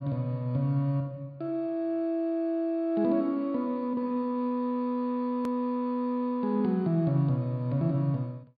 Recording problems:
treble cut off; nothing above 4.8 kHz
hard cut with a click; at 5.5 s

